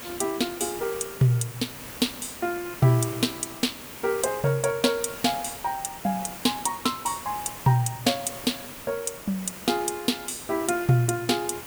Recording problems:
background hiss; slope -3 dB per octave, SNR 12 dB

